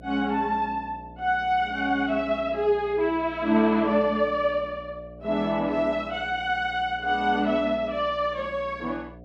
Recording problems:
electrical hum; 60 Hz, harmonics up to 720 Hz, SNR 20 dB

